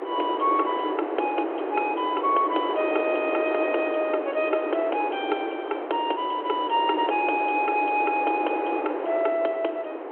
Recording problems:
phone line; 280 Hz to 3.2 kHz, G.726
wind on the microphone; below 760 Hz, SNR 4 dB

